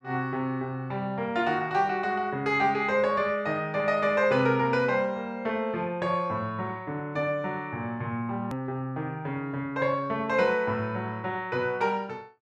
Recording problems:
hard cut with a click; at 8.5 s

